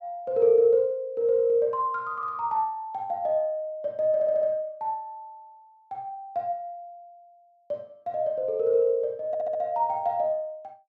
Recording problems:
stutter; at 4 s and at 9.5 s

